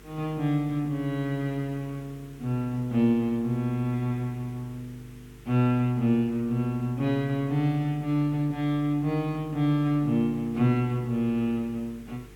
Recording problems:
hum; 50 Hz, harmonics up to 450 Hz, SNR 24 dB
hiss; SNR 27 dB

